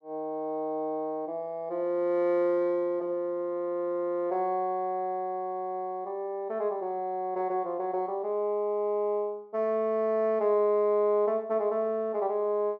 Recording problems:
none

